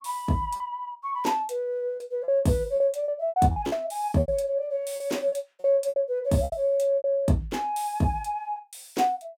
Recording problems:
packet loss; 9% of the sound replaced, filled with repeated pitch periods

